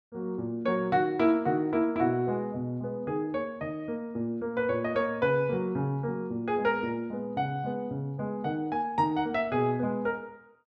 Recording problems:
none

